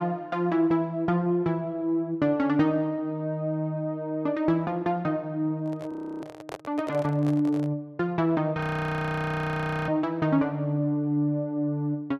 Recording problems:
handling noise; from 5.5 to 7.5 s; peak -6 dB vs average level
audio freezing; at 6 s and at 8.5 s for 1.5 s

